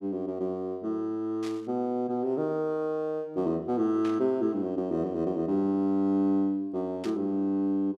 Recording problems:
static burst; at 1.5 s, at 4 s and at 7 s; peak -10 dB vs average level

